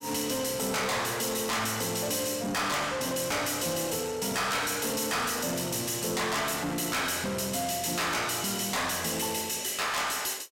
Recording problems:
distortion; soft clipping, signal-to-distortion ratio 6 dB

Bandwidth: 16 kHz